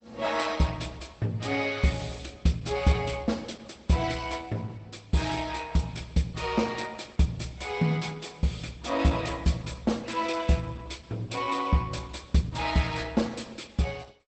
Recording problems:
lossy compression; Opus, log-spectral distance 5 dB, nothing above 8.2 kHz

